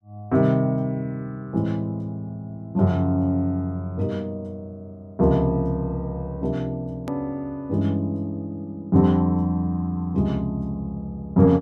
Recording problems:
edit click; at 7 s

